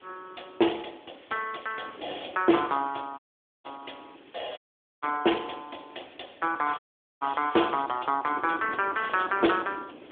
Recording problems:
phone line; 260 Hz to 3.6 kHz, AMR-NB
hiss; SNR 27 dB
wind noise; below 550 Hz, SNR 19 dB
audio cutting out; at 3 s, at 4.5 s and at 7 s

